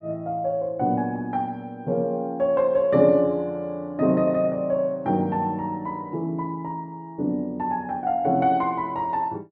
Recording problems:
none

